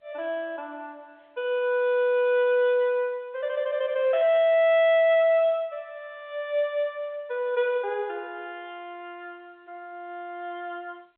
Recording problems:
phone line; 370 Hz to 3.9 kHz, G.711
distorted audio; hard clipping, signal-to-distortion ratio 11 dB

